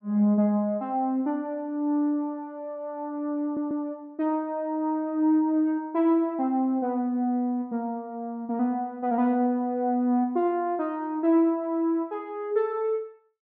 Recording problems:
audio stuttering; at 3.5 s

